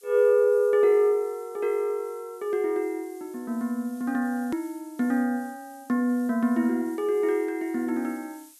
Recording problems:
background hiss; slope +4 dB per octave, SNR 27 dB
hard cut with a click; at 4.5 s

